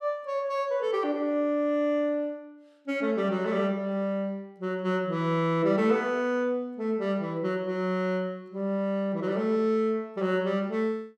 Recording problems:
none

